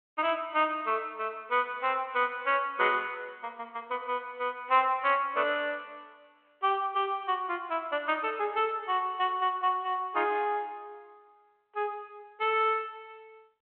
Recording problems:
phone line; 320 Hz to 3.4 kHz, G.726

